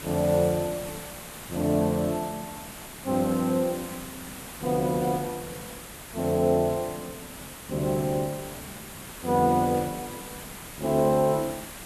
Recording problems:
background hiss; slope -3 dB per octave, SNR 13 dB

